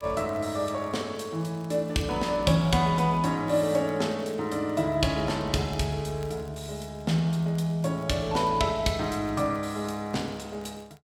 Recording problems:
crackling; vinyl, SNR 30 dB

